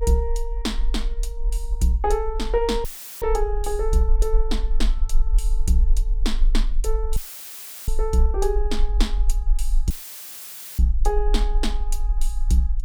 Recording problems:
rumble; below 42 Hz, strongest tone 22 Hz, SNR 0 dB
dropout; at 3 s, at 7 s for 0.5 s and at 10 s for 1 s; filled with static

